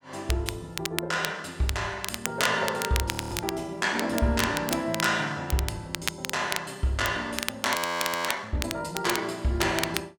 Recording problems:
crackling; vinyl, SNR 5 dB
frozen audio; at 3 s and at 8 s for 0.5 s

